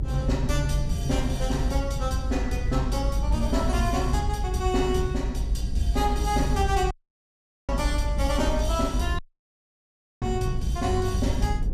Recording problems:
rumble; below 72 Hz, SNR 1 dB
audio cutting out; at 7 s for 1 s and at 9 s for 1 s

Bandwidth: 15 kHz